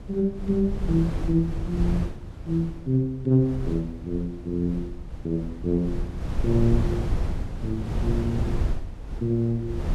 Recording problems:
wind noise; below 130 Hz, SNR 5 dB

